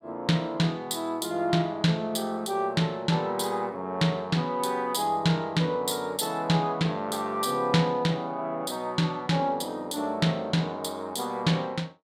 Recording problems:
none

